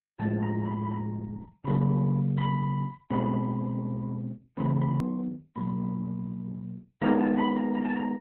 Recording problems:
lossy compression; MP3, then Opus, log-spectral distance 3 dB, nothing above 13.1 kHz
edit click; at 5 s

